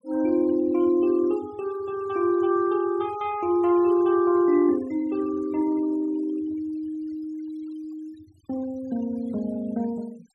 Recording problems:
noise reduction artefacts; signal-to-artefact ratio 25 dB

